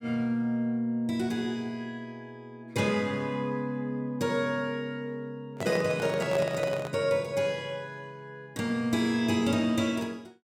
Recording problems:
microphone handling noise; from 5.5 to 7 s; peak -1 dB vs average level

